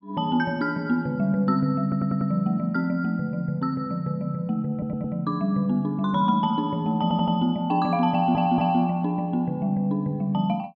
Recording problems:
stutter; 4 times, first at 2 s

